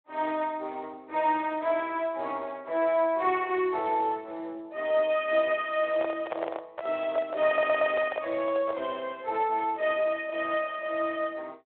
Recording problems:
telephone audio; 300 Hz to 3.6 kHz, Speex
handling noise; from 6 to 9 s; peak 0 dB vs average level
stutter; at 7.5 s

